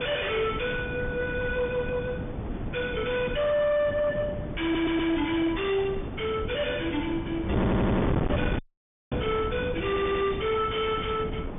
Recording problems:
treble missing; nothing above 3.6 kHz
distorted audio; soft clipping, signal-to-distortion ratio 6 dB
wind noise; below 420 Hz, SNR 4 dB
stutter; at 4.5 s, at 7.5 s and at 10 s
audio cutting out; at 8.5 s for 0.5 s

